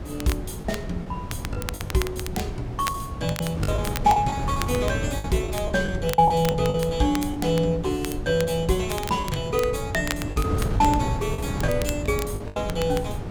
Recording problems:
low-frequency rumble; below 210 Hz, SNR 16 dB
wind on the microphone; below 220 Hz, SNR 7 dB
crackling; vinyl, SNR 12 dB
lost packets; 8% of the sound replaced, filled with the last packet

